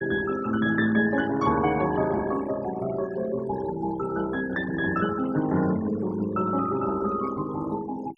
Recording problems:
noise reduction artefacts; signal-to-artefact ratio 16 dB

